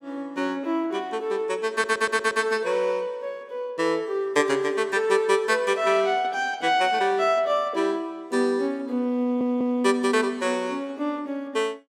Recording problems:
stutter; at 1.5 s and at 9 s

